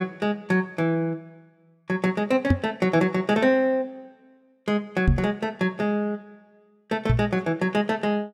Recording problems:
microphone bump; at 2.5 s, at 5 s and at 7 s; peak +8 dB vs average level

